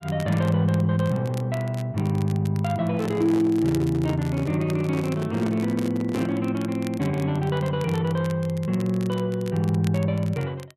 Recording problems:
crackling; vinyl, SNR 21 dB
handling noise; from 3 to 6.5 s; peak -4 dB vs average level

